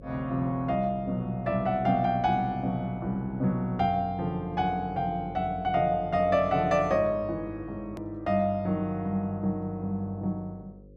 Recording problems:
electrical hum; 50 Hz, harmonics up to 550 Hz, SNR 19 dB
hard cut with a click; at 8 s

